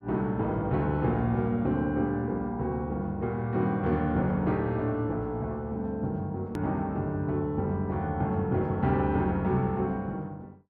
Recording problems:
edit click; at 6.5 s

